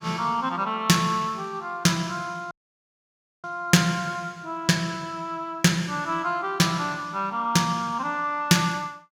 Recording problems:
audio cutting out; at 2.5 s for 1 s

